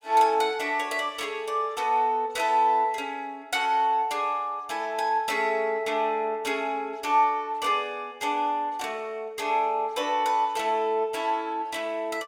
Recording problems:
none

